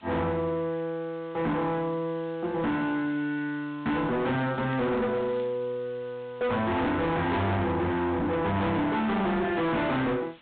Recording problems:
treble cut off; nothing above 4 kHz
distortion; hard clipping, signal-to-distortion ratio 6 dB
background hiss; SNR 27 dB
crackling; from 4.5 to 5.5 s; loose cable, SNR 25 dB

